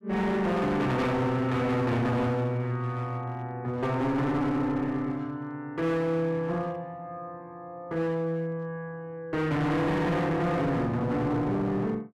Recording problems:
distorted audio; hard clipping, uneven, signal-to-distortion ratio 6 dB

